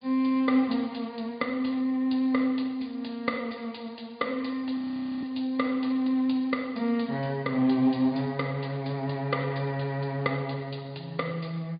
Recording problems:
treble cut off; nothing above 4.8 kHz
lossy compression; MP3, then Speex, log-spectral distance 4 dB
frozen audio; at 5 s

